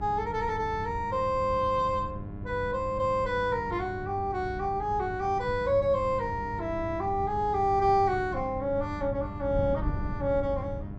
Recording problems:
hum; 50 Hz, harmonics up to 1.4 kHz, SNR 13 dB
wind on the microphone; below 140 Hz, SNR 11 dB

